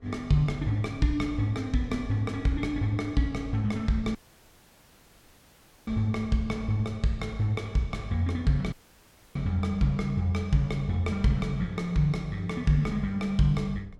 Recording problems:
low-frequency rumble; below 130 Hz, SNR 23 dB
audio cutting out; at 4 s for 1.5 s and at 8.5 s for 0.5 s

